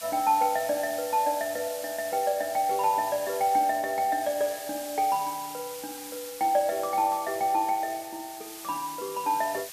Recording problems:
background hiss; slope +3 dB per octave, SNR 12 dB

